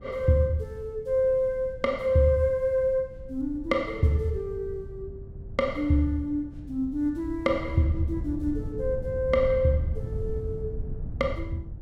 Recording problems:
wind noise; below 110 Hz, SNR 11 dB

